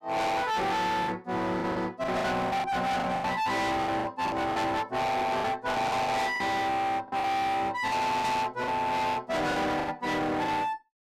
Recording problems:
distortion; hard clipping, uneven, signal-to-distortion ratio 5 dB
lost packets; 11% of the sound replaced, filled with the last packet

